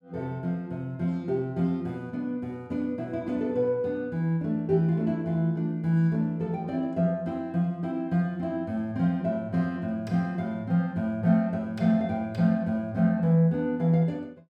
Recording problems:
none

